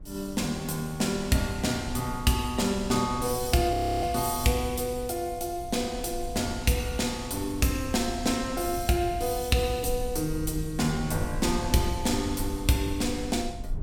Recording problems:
low-frequency rumble; below 88 Hz, SNR 13 dB
frozen audio; at 3.5 s

